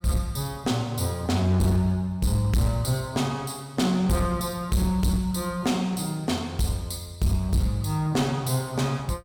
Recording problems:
distorted audio; hard clipping, uneven, signal-to-distortion ratio 11 dB

